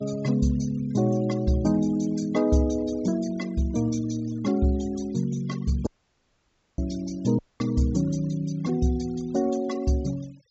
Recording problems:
low-pass filter; nothing above 7.6 kHz
noise reduction artefacts; signal-to-artefact ratio 22 dB
audio cutting out; at 6 s for 1 s and at 7.5 s

